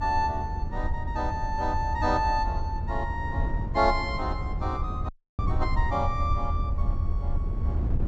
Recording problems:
treble cut off; nothing above 8 kHz
rumble; below 78 Hz, SNR 4 dB
wind noise; below 120 Hz, SNR 5 dB
audio cutting out; at 5 s

